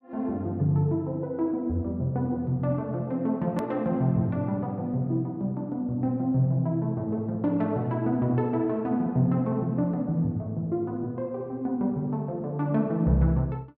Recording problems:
hard cut with a click; at 3.5 s

